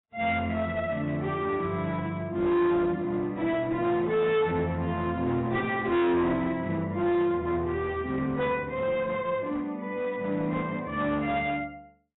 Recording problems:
lossy compression; AAC, log-spectral distance 2 dB, nothing above 3.8 kHz
distorted audio; hard clipping, uneven, signal-to-distortion ratio 7 dB

